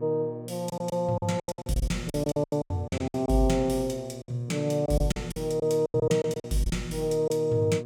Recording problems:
hum; 60 Hz, harmonics up to 1.1 kHz, SNR 13 dB
packet loss; 15% of the sound replaced, filled with silence

